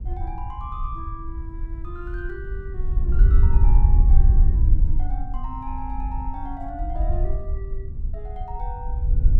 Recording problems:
wind noise; below 60 Hz, SNR -13 dB

